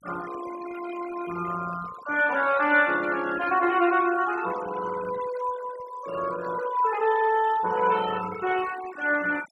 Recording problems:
denoising artefacts; signal-to-artefact ratio 16 dB

